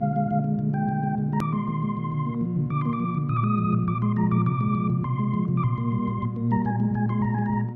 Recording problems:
hum; 60 Hz, harmonics up to 720 Hz, SNR 12 dB
edit click; at 1.5 s

